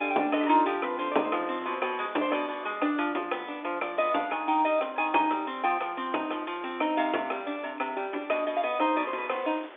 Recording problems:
phone line; 260 Hz to 3.6 kHz, G.711
wind noise; below 2.3 kHz, SNR 21 dB

